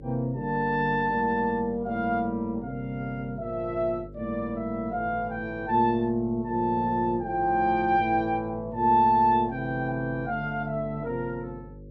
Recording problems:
mains hum; 50 Hz, harmonics up to 550 Hz, SNR 18 dB

